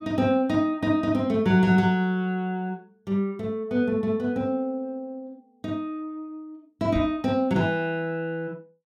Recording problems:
microphone thump; at 7 s; peak -2 dB vs average level

